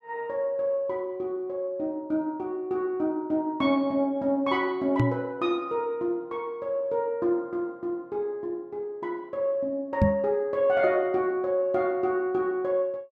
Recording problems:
microphone bump; at 5 s and at 10 s; peak +9 dB vs average level

